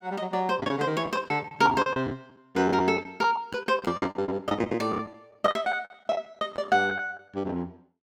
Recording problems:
packet loss; 16% of the sound replaced, filled with the last packet

